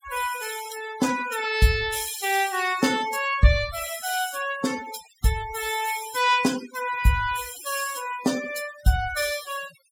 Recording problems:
noise reduction artefacts; signal-to-artefact ratio 13 dB

